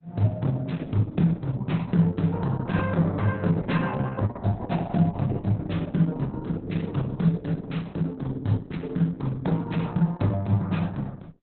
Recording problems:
lossy compression; Opus, log-spectral distance 3 dB, nothing above 4 kHz

